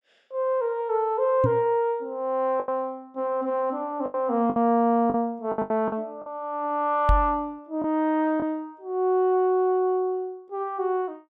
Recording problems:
packet loss; 5% of the sound replaced, filled with the last packet
microphone thump; at 1.5 s and at 7 s; peak +5 dB vs average level

